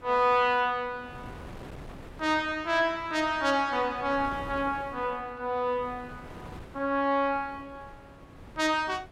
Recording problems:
wind on the microphone; below 690 Hz, SNR 19 dB

